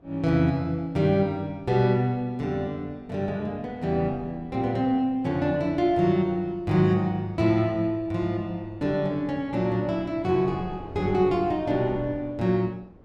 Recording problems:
wind on the microphone; below 410 Hz, SNR 23 dB

